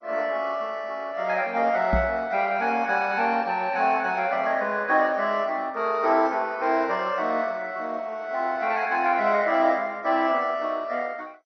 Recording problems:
lossy compression; MP2, log-spectral distance 3 dB, nothing above 6 kHz
microphone bump; at 2 s; peak +2 dB vs average level

